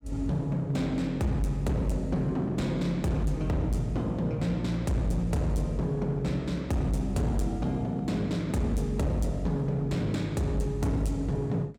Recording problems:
distorted audio; hard clipping, signal-to-distortion ratio 10 dB

